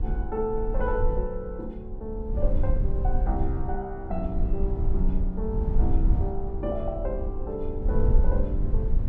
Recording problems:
low-frequency rumble; below 58 Hz, SNR -4 dB

